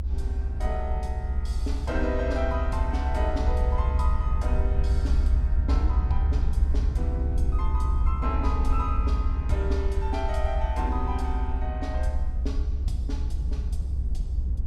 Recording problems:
rumble; below 68 Hz, SNR -6 dB

